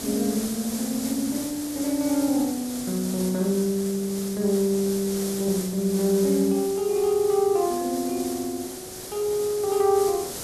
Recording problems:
hiss; SNR 10 dB

